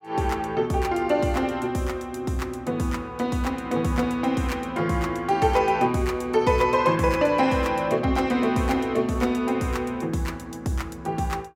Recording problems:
none

